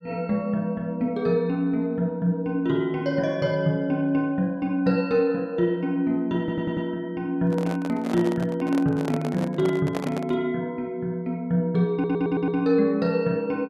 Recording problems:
audio stuttering; at 6.5 s and at 12 s
handling noise; from 7.5 to 10 s; peak -2 dB vs average level

